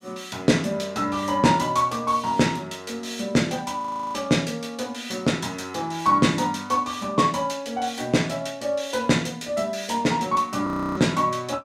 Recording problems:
frozen audio; at 4 s and at 11 s

